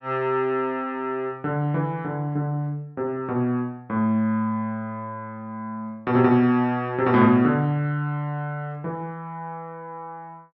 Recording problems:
none

